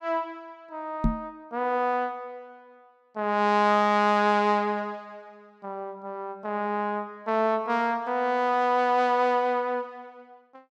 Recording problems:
microphone bump; at 1 s; peak +4 dB vs average level

